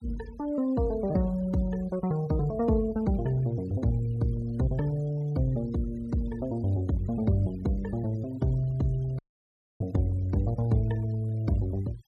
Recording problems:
noise reduction artefacts; signal-to-artefact ratio 25 dB
dropout; at 9 s for 0.5 s

